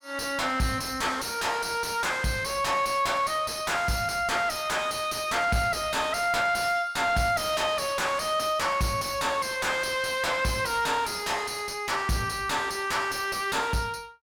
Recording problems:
distorted audio; soft clipping, signal-to-distortion ratio 5 dB

